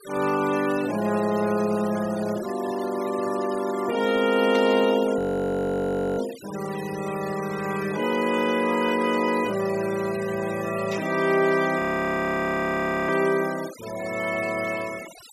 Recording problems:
noise reduction artefacts; signal-to-artefact ratio 16 dB
burst of static; at 4.5 s and at 11 s; peak -9 dB vs average level
frozen audio; at 5 s for 1 s and at 12 s for 1.5 s

